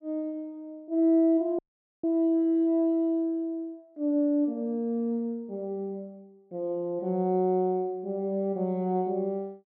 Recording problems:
dropout; at 1.5 s

